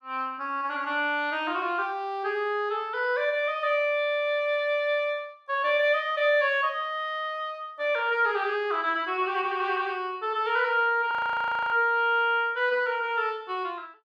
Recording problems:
frozen audio; at 11 s for 0.5 s

